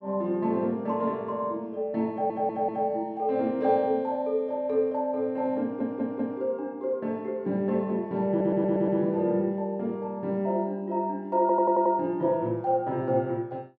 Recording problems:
stutter; 4 times, first at 2 s

